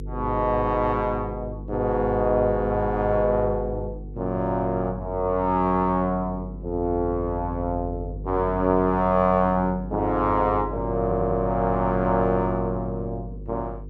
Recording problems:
electrical hum; 50 Hz, harmonics up to 500 Hz, SNR 11 dB
stutter; at 11 s

